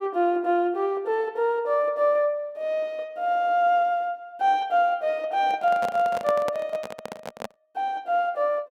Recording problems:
handling noise; from 5.5 to 7.5 s; peak -2 dB vs average level

